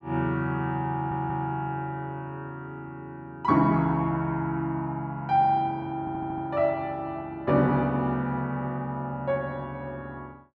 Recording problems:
audio stuttering; at 1 s and at 6 s

